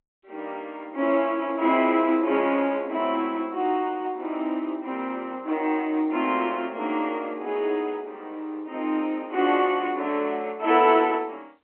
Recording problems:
phone line; 240 Hz to 3.3 kHz, G.711

